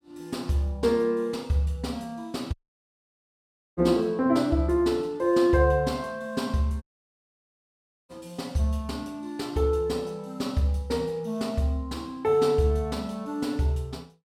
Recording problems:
dropout; at 2.5 s for 1 s and at 7 s for 1.5 s

